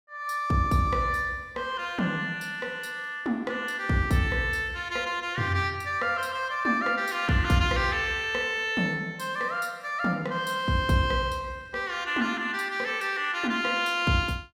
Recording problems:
none

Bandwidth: 16 kHz